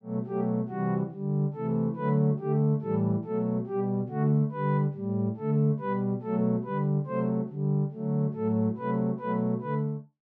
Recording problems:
none

